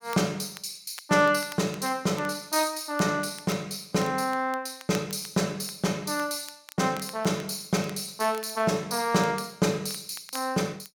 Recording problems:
crackling; vinyl, SNR 20 dB

